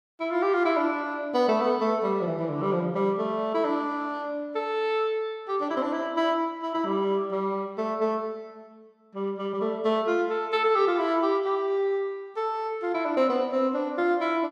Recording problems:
none

